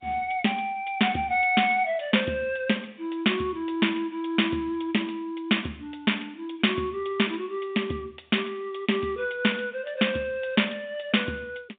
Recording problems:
phone line; 150 Hz to 3.7 kHz, G.711

